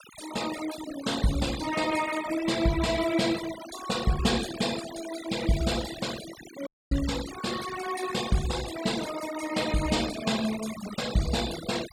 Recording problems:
noise reduction artefacts; signal-to-artefact ratio 10 dB
audio cutting out; at 6.5 s

